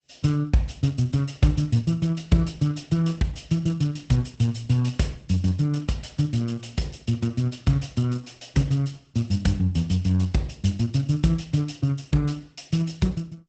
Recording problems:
lossy codec; Opus, log-spectral distance 4 dB, nothing above 8 kHz

